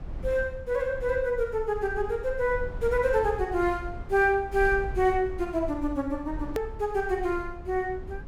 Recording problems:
rumble; below 78 Hz, SNR 13 dB
hard cut with a click; at 6.5 s

